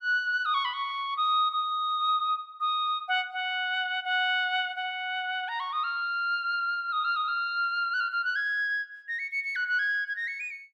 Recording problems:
none

